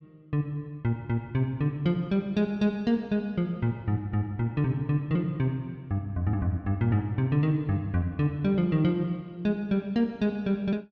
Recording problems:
none

